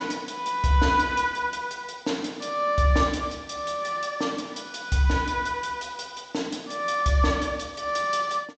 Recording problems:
treble missing; nothing above 8 kHz

